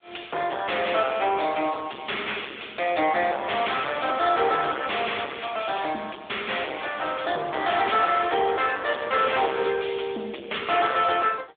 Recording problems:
telephone audio; 280 Hz to 3.5 kHz, AMR-NB
distortion; soft clipping, signal-to-distortion ratio 7 dB

